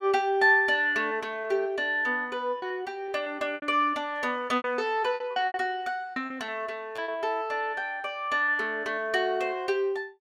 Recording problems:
packet loss; 7% of the sound replaced, filled with repeated pitch periods

